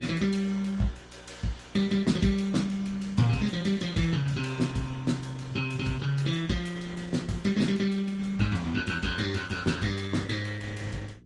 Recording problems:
lossy codec; Opus, then Vorbis, log-spectral distance 4 dB, nothing above 10.7 kHz
hum; 60 Hz, harmonics up to 420 Hz, SNR 23 dB

